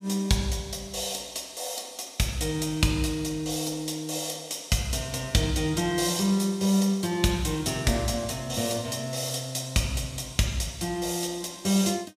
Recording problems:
none

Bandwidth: 15 kHz